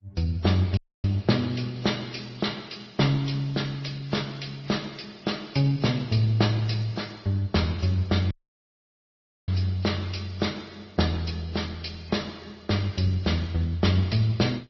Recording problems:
lossy codec; MP3, then Opus, log-spectral distance 6 dB, nothing above 5.7 kHz
dropout; at 1 s and at 8.5 s for 1 s

